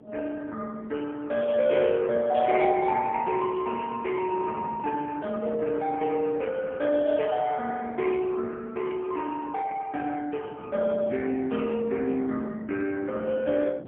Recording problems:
phone line; 260 Hz to 2.6 kHz, AMR-NB, then MP3
wind noise; below 440 Hz, SNR 18 dB

